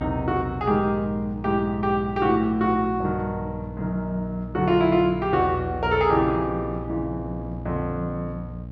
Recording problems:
hum; 60 Hz, harmonics up to 540 Hz, SNR 11 dB

